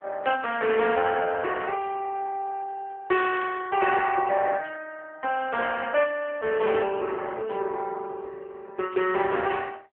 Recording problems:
phone line; 300 Hz to 3.3 kHz, AMR-NB

